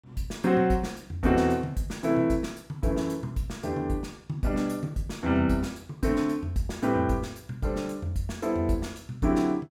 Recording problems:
none

